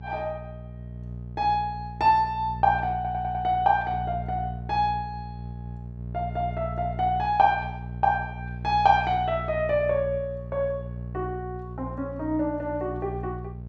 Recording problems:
hum; 60 Hz, harmonics up to 600 Hz, SNR 10 dB
audio stuttering; at 3 s

